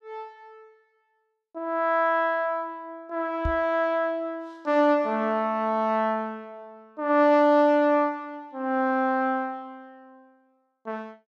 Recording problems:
knock on the microphone; at 3.5 s; peak -2 dB vs average level

